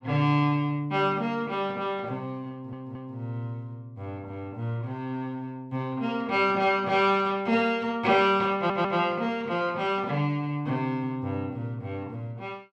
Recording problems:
stutter; at 2.5 s and at 8.5 s

